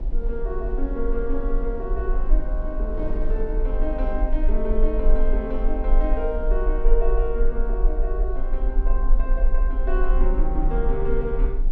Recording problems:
rumble; below 38 Hz, strongest tone 20 Hz, SNR -4 dB
wind on the microphone; below 370 Hz, SNR 11 dB

